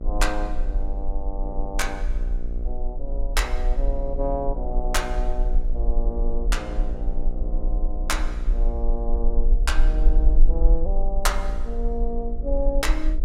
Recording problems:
hum; 60 Hz, harmonics up to 840 Hz, SNR 9 dB
rumble; below 40 Hz, strongest tone 18 Hz, SNR -4 dB

